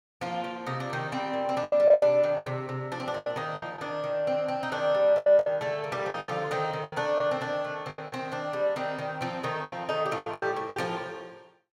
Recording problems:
lost packets; 11% of the sound replaced, filled with the last packet

